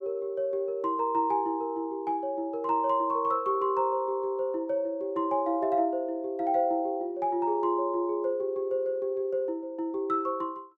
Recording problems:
none

